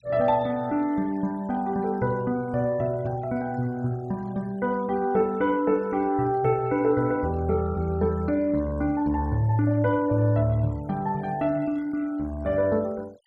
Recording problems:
denoising artefacts; signal-to-artefact ratio 26 dB

